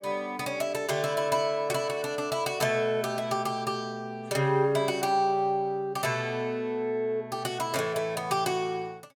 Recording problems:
none

